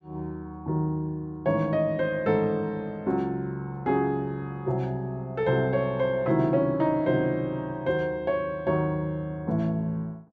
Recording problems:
none

